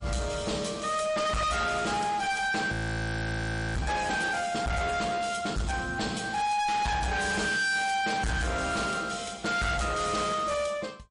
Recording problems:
codec artefacts; MP3, log-spectral distance 5 dB, nothing above 10.4 kHz
distorted audio; hard clipping, signal-to-distortion ratio 6 dB
frozen audio; at 2.5 s for 1 s

